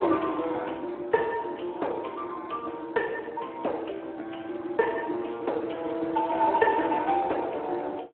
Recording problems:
phone line; 260 Hz to 3 kHz, Speex

